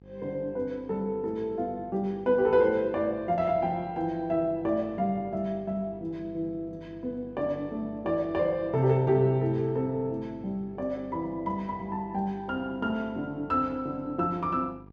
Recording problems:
hum; 50 Hz, harmonics up to 900 Hz, SNR 21 dB

